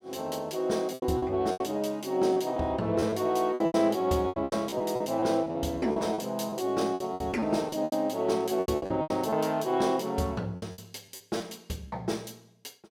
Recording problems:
packet loss; 13% of the sound replaced, filled with repeated pitch periods

